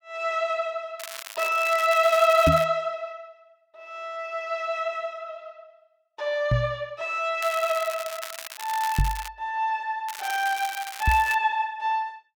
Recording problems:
crackling; from 1 to 2.5 s, from 7.5 to 9.5 s and from 10 to 11 s; loose cable, SNR 12 dB
knock on the microphone; 4 times, first at 2.5 s; peak +6 dB vs average level

